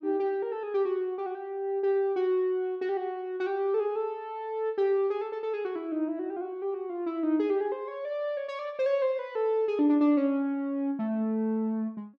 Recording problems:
none

